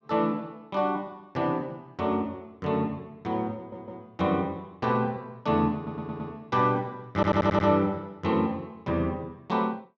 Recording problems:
stutter; at 3.5 s, at 6 s and at 7 s

